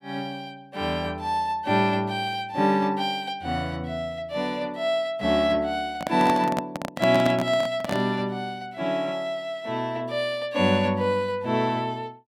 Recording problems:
handling noise; from 6 to 8 s; peak +2 dB vs average level

